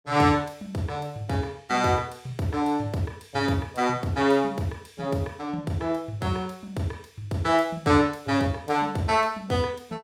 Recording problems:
none

